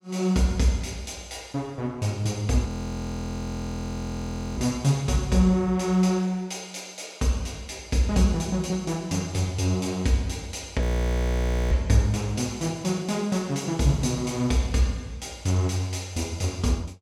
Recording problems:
frozen audio; at 2.5 s for 2 s and at 11 s for 1 s

